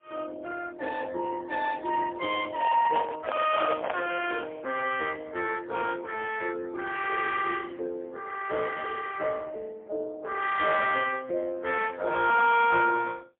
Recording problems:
telephone audio; 320 Hz to 2.7 kHz, AMR-NB, then MP3
handling noise; from 2.5 to 4 s; peak +2 dB vs average level

